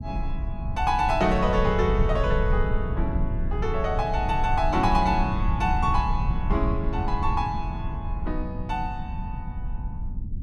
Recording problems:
rumble; below 92 Hz, SNR 3 dB

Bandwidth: 14.5 kHz